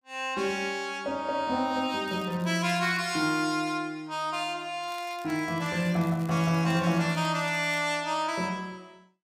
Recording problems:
crackle; from 2 to 3 s and from 5 to 8 s; loose cable, SNR 23 dB

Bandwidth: 15.5 kHz